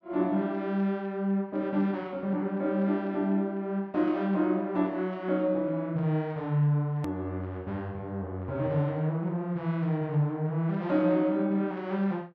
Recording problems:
edit click; at 7 s

